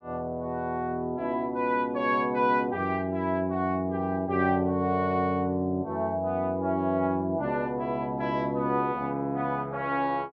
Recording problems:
none

